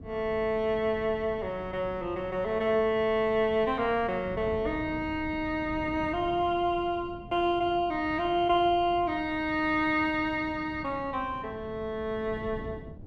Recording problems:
wind noise; below 250 Hz, SNR 16 dB

